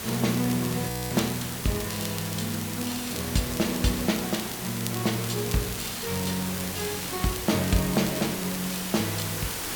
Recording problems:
background hiss; slope -2 dB per octave, SNR 4 dB
crackle; vinyl, SNR 12 dB
frozen audio; at 1 s

